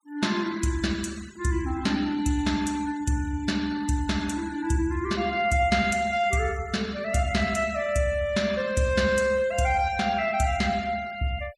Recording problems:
denoising artefacts; signal-to-artefact ratio 21 dB

